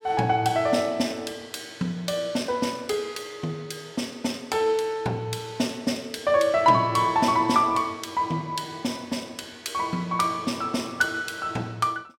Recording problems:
none

